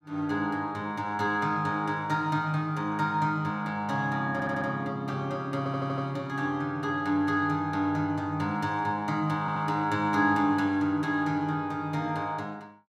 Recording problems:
stutter; at 4.5 s, at 5.5 s and at 9.5 s

